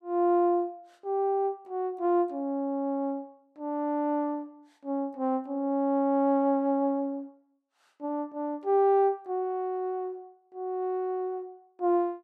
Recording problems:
none

